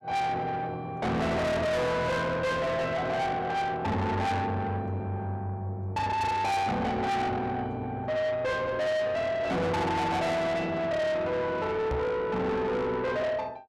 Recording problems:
distorted audio; soft clipping, signal-to-distortion ratio 6 dB
microphone bump; at 12 s; peak +2 dB vs average level

